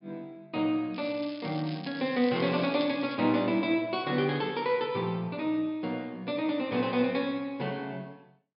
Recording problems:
treble cut off; nothing above 5.5 kHz
crackle; from 1 to 3 s; loose cable, SNR 16 dB

